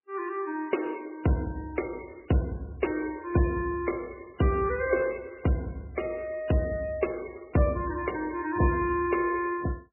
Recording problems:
codec artefacts; MP3, log-spectral distance 5 dB, nothing above 2.8 kHz

